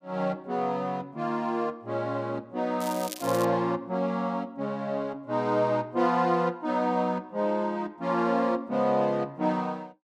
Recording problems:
crackle; at 3 s; loose cable, SNR 12 dB

